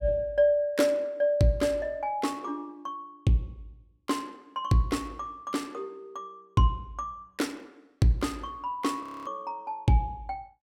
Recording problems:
audio freezing; at 9 s

